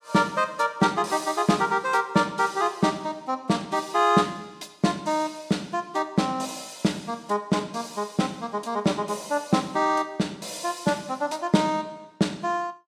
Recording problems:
none

